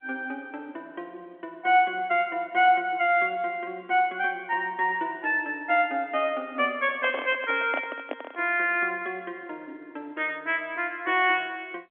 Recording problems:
phone line; 220 Hz to 3.5 kHz, G.711
microphone handling noise; from 7 to 8.5 s; peak -3 dB vs average level

